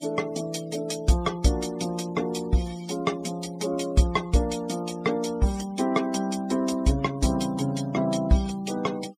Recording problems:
denoising artefacts; signal-to-artefact ratio 19 dB

